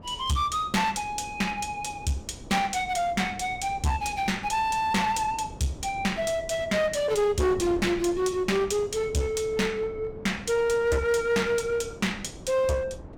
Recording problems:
distortion; hard clipping, uneven, signal-to-distortion ratio 9 dB
wind noise; below 420 Hz, SNR 17 dB

